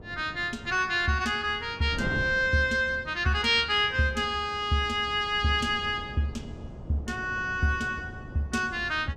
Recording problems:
wind noise; below 310 Hz, SNR 16 dB

